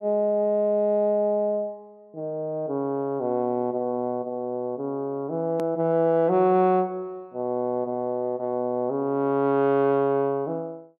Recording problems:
click at an edit; at 5.5 s

